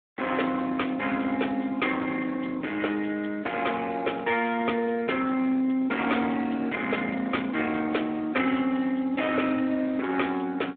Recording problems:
phone line; 190 Hz to 3.6 kHz, Speex
distorted audio; soft clipping, signal-to-distortion ratio 13 dB

